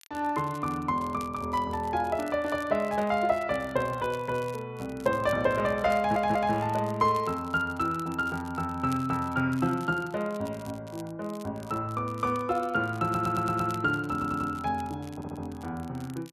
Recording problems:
crackle; vinyl, SNR 23 dB
audio stuttering; 4 times, first at 6 s

